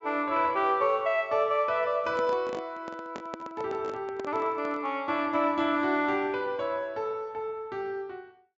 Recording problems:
low-pass filter; nothing above 8 kHz
microphone handling noise; from 2 to 5 s; peak -6 dB vs average level

